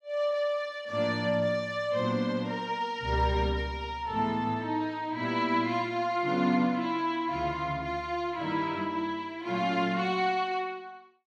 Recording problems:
none

